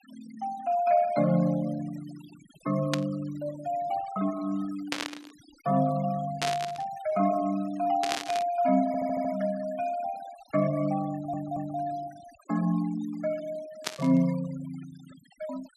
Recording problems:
denoising artefacts; signal-to-artefact ratio 21 dB
burst of static; 5 times, first at 3 s; peak +3 dB vs average level
stutter; at 9 s and at 11 s

